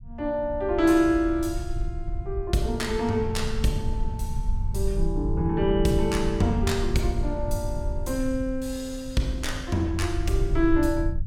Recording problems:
low-frequency rumble; below 74 Hz, SNR 6 dB

